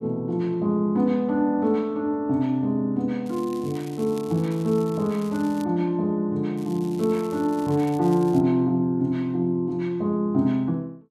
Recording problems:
crackle; from 3.5 to 5.5 s and from 6.5 to 8.5 s; loose cable, SNR 24 dB

